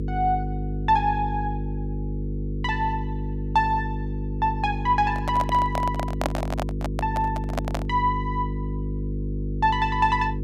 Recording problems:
hum; 50 Hz, harmonics up to 500 Hz, SNR 4 dB
handling noise; from 5 to 8 s; peak +3 dB vs average level

